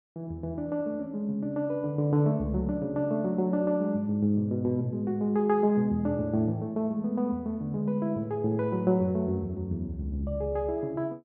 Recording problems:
none

